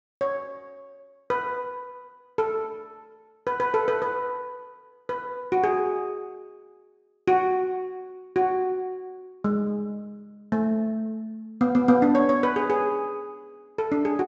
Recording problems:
treble missing; nothing above 8 kHz

